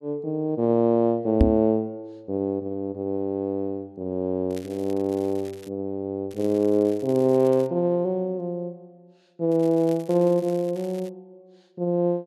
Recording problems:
microphone thump; at 1.5 s; peak +9 dB vs average level
crackling; from 4.5 to 5.5 s, from 6.5 to 7.5 s and from 9.5 to 11 s; loose cable, SNR 25 dB

